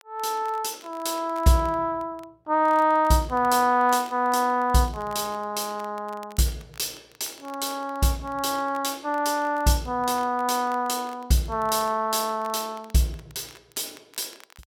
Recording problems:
crackle; vinyl, SNR 27 dB

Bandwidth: 16.5 kHz